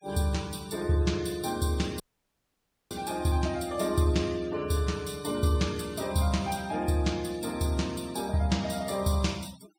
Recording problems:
noise reduction artefacts; signal-to-artefact ratio 20 dB
audio cutting out; at 2 s for 1 s

